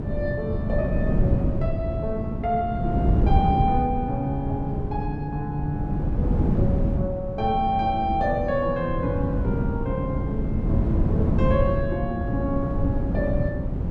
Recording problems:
wind noise; below 200 Hz, SNR -2 dB

